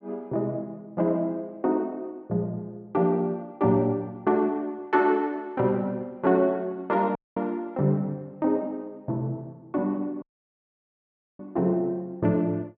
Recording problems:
audio cutting out; at 7 s and at 10 s for 1 s

